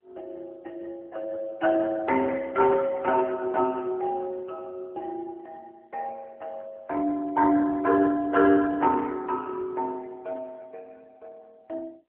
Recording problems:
phone line; 260 Hz to 2.9 kHz, AMR-NB

